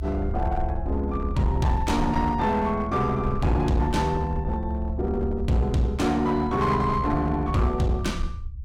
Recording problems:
distorted audio; hard clipping, uneven, signal-to-distortion ratio 10 dB
low-frequency rumble; below 72 Hz, SNR 6 dB

